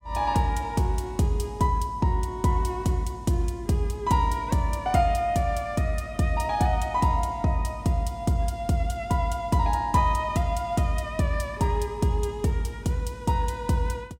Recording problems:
none

